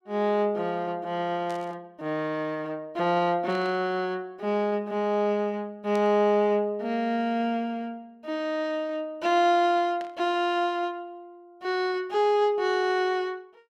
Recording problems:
burst of static; 4 times, first at 1.5 s; peak -13 dB vs average level

